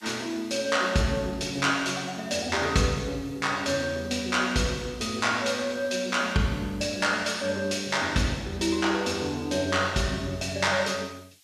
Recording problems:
hiss; slope +4 dB per octave, SNR 29 dB

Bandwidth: 14.5 kHz